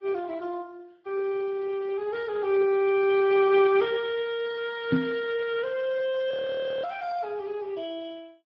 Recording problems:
codec artefacts; Vorbis, then Speex, log-spectral distance 3 dB
microphone bump; at 5 s; peak +7 dB vs average level
audio freezing; at 6.5 s for 0.5 s

